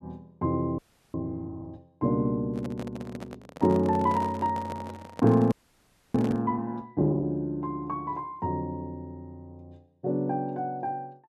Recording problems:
frozen audio; at 1 s and at 5.5 s for 0.5 s
handling noise; from 2.5 to 6.5 s; peak -5 dB vs average level

